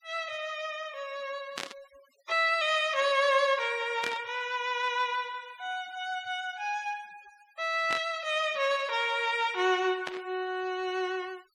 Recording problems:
noise reduction artefacts; signal-to-artefact ratio 24 dB
static burst; 4 times, first at 1.5 s; peak -2 dB vs average level

